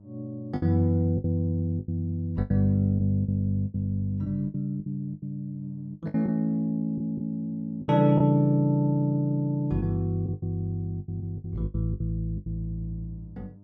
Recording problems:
electrical hum; 50 Hz, harmonics up to 700 Hz, SNR 26 dB
lost packets; 11% of the sound replaced, filled with the last packet

